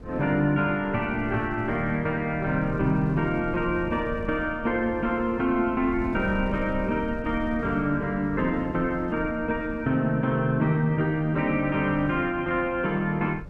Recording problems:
wind on the microphone; below 160 Hz, SNR 15 dB

